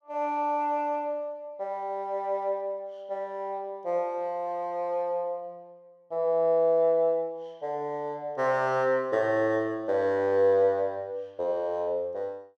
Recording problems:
none

